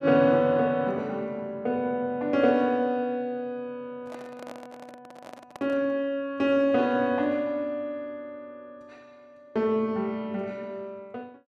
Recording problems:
handling noise; from 4 to 6 s; peak -10 dB vs average level

